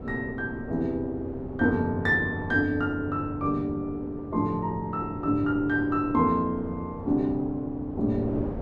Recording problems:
wind noise; below 440 Hz, SNR 13 dB

